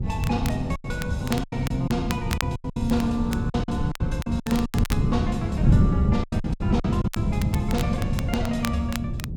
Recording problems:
wind on the microphone; below 170 Hz, SNR -1 dB
crackling; vinyl, SNR 10 dB
packet loss; 12% of the sound replaced, filled with silence

